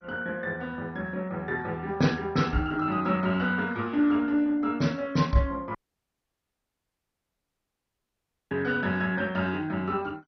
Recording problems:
lossy codec; MP2, log-spectral distance 2 dB, nothing above 6 kHz
dropout; at 6 s for 3 s

